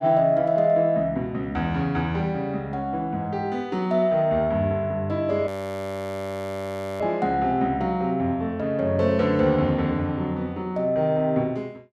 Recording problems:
audio freezing; at 5.5 s for 1.5 s

